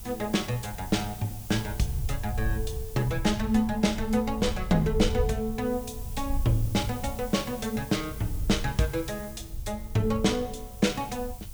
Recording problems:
hiss; SNR 16 dB
wind noise; below 78 Hz, SNR 9 dB

